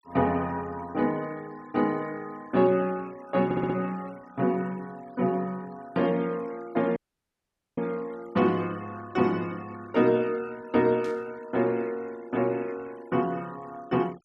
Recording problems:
noise reduction artefacts; signal-to-artefact ratio 24 dB
audio stuttering; at 3.5 s
dropout; at 7 s for 1 s
static burst; at 11 s; peak -15 dB vs average level

